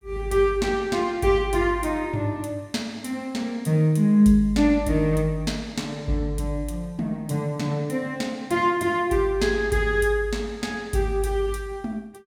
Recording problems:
none

